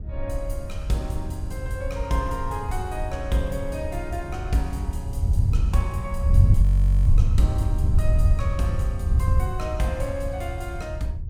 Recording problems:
rumble; below 64 Hz, SNR 11 dB
wind on the microphone; below 96 Hz, SNR -5 dB
audio freezing; at 6.5 s

